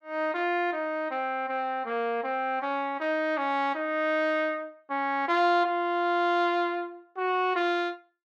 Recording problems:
none

